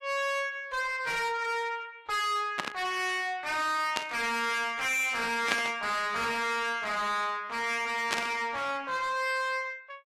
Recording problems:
codec artefacts; AAC, log-spectral distance 2 dB, nothing above 13.1 kHz
distorted audio; soft clipping, signal-to-distortion ratio 7 dB
burst of static; 4 times, first at 2.5 s; peak +4 dB vs average level

